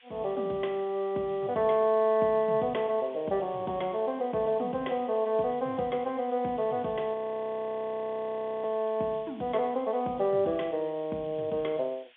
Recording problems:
phone line; 150 Hz to 3.6 kHz, G.711
hiss; SNR 27 dB
frozen audio; at 7 s for 1.5 s

